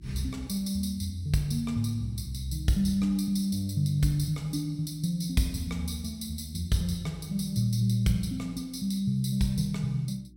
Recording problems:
hum; 60 Hz, harmonics up to 360 Hz, SNR 25 dB

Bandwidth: 16.5 kHz